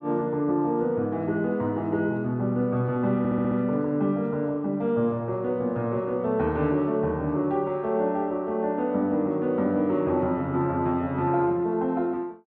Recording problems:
stutter; at 3 s

